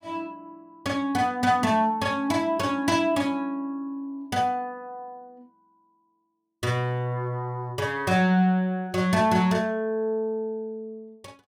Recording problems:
none

